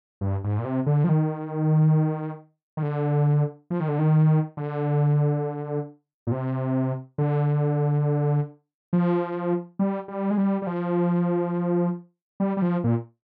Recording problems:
none

